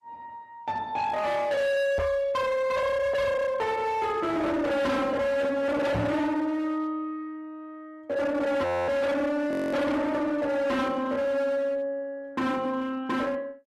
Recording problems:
codec artefacts; Opus, log-spectral distance 2 dB, nothing above 13.1 kHz
distortion; hard clipping, signal-to-distortion ratio 7 dB
microphone thump; at 2 s and at 6 s; peak +4 dB vs average level
audio freezing; at 8.5 s and at 9.5 s

